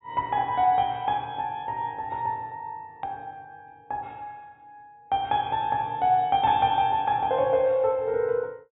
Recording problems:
treble missing; nothing above 4 kHz
click at an edit; at 3 s

